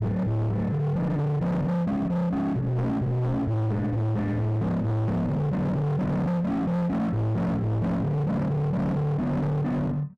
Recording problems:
distorted audio; hard clipping, signal-to-distortion ratio 6 dB

